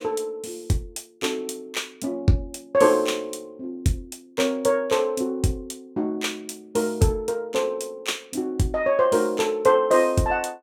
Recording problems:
none

